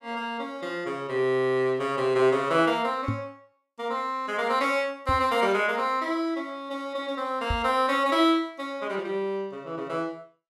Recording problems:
microphone thump; at 3 s, at 5 s and at 7.5 s; peak +1 dB vs average level

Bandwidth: 15 kHz